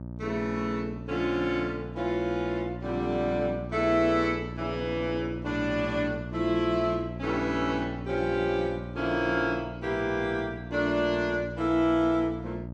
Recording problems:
electrical hum; 60 Hz, harmonics up to 960 Hz, SNR 10 dB

